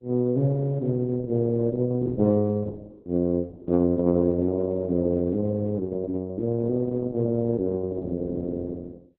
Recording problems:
codec artefacts; Opus, log-spectral distance 2 dB

